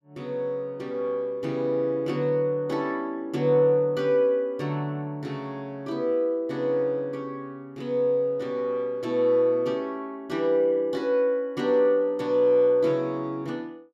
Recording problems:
none

